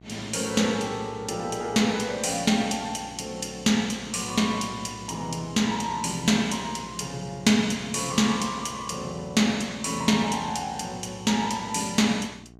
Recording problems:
electrical hum; 60 Hz, harmonics up to 1.2 kHz, SNR 22 dB

